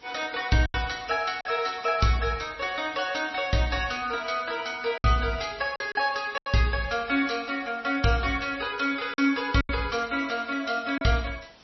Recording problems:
codec artefacts; MP3, log-spectral distance 8 dB, nothing above 5.8 kHz
background hiss; slope -2 dB per octave, SNR 26 dB
packet loss; 4% of the sound replaced, filled with silence

